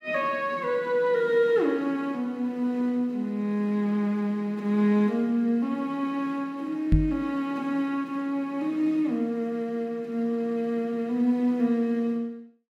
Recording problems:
knock on the microphone; at 7 s; peak +8 dB vs average level

